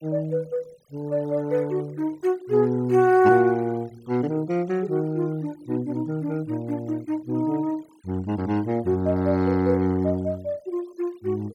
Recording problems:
denoising artefacts; signal-to-artefact ratio 26 dB

